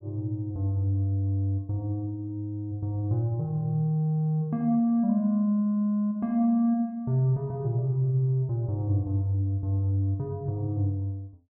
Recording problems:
none

